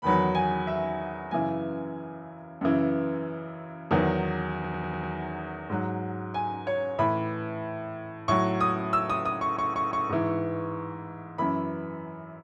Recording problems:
audio stuttering; at 4.5 s and at 9.5 s

